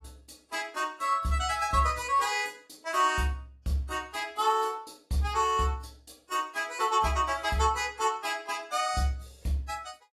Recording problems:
codec artefacts; AAC, log-spectral distance 3 dB, nothing above 14.7 kHz

